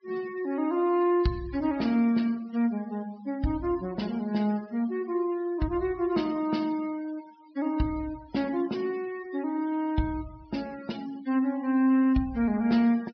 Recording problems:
treble cut off; nothing above 5.5 kHz
denoising artefacts; signal-to-artefact ratio 21 dB

